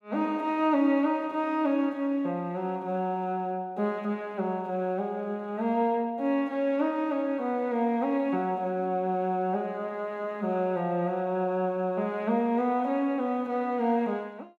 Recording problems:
none

